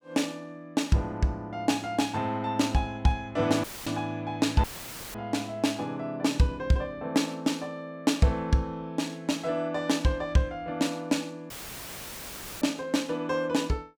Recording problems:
dropout; at 3.5 s, at 4.5 s for 0.5 s and at 12 s for 1 s; filled with static

